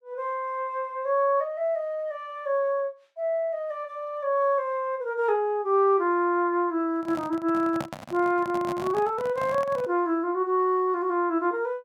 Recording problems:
handling noise; from 7 to 10 s; peak -4 dB vs average level

